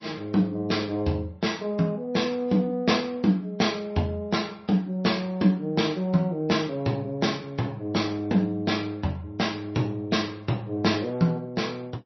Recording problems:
lossy compression; MP3, log-spectral distance 2 dB, nothing above 5.8 kHz

